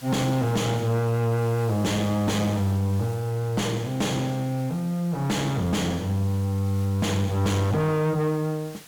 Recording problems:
distortion; soft clipping, signal-to-distortion ratio 5 dB
hiss; slope 0 dB per octave, SNR 21 dB

